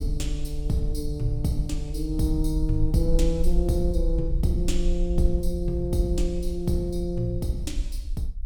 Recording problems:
low-frequency rumble; below 48 Hz, SNR 2 dB

